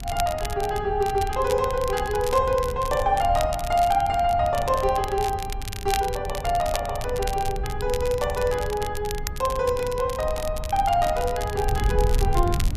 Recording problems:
wind on the microphone; below 92 Hz, SNR 8 dB
crackling; vinyl, SNR 13 dB

